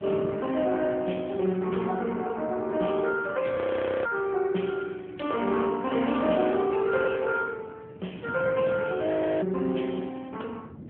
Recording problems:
telephone audio; 150 Hz to 3.3 kHz, AMR-NB
wind noise; below 400 Hz, SNR 18 dB
audio freezing; at 3.5 s and at 9 s

